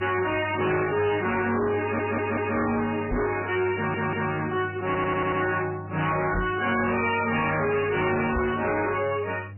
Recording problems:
lossy compression; MP3, log-spectral distance 6 dB, nothing above 2.5 kHz
distortion; hard clipping, uneven, signal-to-distortion ratio 6 dB
hum; 50 Hz, harmonics up to 500 Hz, SNR 15 dB
audio stuttering; at 2 s, at 4 s and at 5 s
microphone thump; at 3 s, at 6.5 s and at 8.5 s; peak +2 dB vs average level

